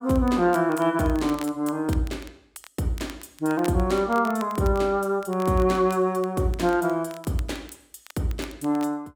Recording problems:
crackling; vinyl, SNR 22 dB

